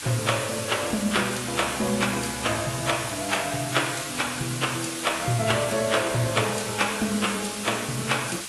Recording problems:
lossy compression; AAC, log-spectral distance 17 dB, nothing above 11.3 kHz
hiss; SNR 6 dB

